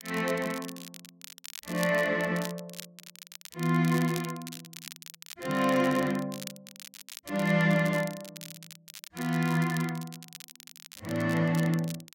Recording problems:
crackling; vinyl, SNR 16 dB

